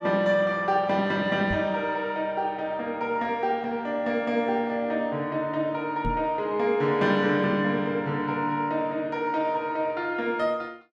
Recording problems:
microphone thump; at 1.5 s and at 6 s; peak -1 dB vs average level

